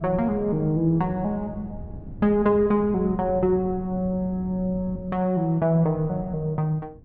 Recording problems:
wind on the microphone; below 190 Hz, SNR 16 dB

